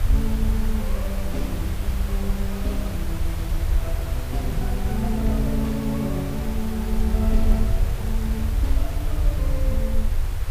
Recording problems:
hiss; slope -4 dB per octave, SNR 8 dB
low-frequency rumble; below 66 Hz, SNR -3 dB
crackling; from 4 to 9.5 s; loose cable, SNR 28 dB

